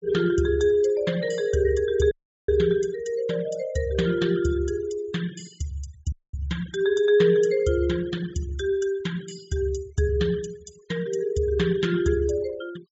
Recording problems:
low-pass filter; nothing above 8 kHz
denoising artefacts; signal-to-artefact ratio 21 dB
dropout; at 2 s and at 6 s

